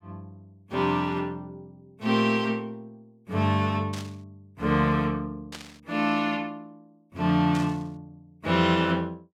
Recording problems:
static burst; at 4 s, at 5.5 s and at 7.5 s; peak -8 dB vs average level

